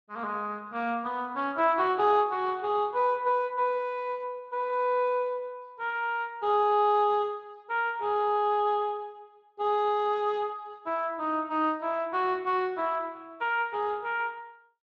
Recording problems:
codec artefacts; Speex, log-spectral distance 2 dB

